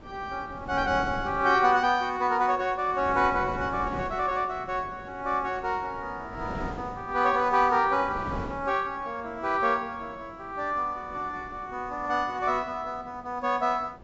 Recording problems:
treble missing; nothing above 8 kHz
wind noise; below 510 Hz, SNR 15 dB

